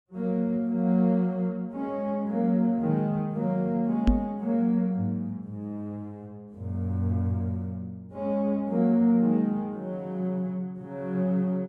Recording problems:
knock on the microphone; at 4 s; peak +8 dB vs average level

